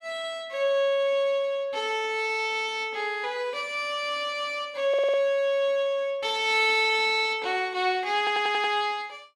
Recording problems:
stutter; at 5 s and at 8 s

